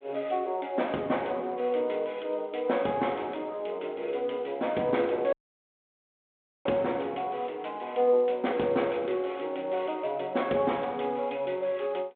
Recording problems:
telephone audio; 170 Hz to 3.6 kHz, G.726
dropout; at 5.5 s for 1.5 s

